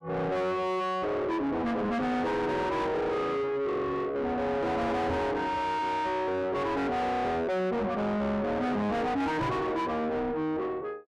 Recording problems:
distortion; soft clipping, signal-to-distortion ratio 6 dB
microphone bump; at 5 s and at 9.5 s; peak +6 dB vs average level

